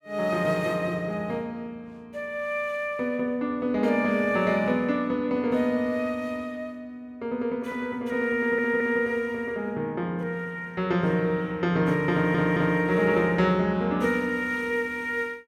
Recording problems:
audio stuttering; at 8.5 s and at 12 s

